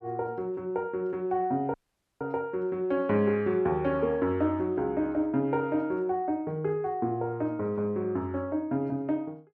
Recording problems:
dropout; at 1.5 s

